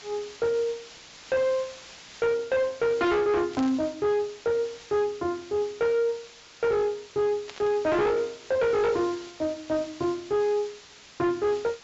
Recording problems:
low-pass filter; nothing above 7.5 kHz
distorted audio; hard clipping, signal-to-distortion ratio 10 dB
hiss; slope 0 dB per octave, SNR 19 dB
static burst; at 3.5 s and at 7.5 s; peak -10 dB vs average level

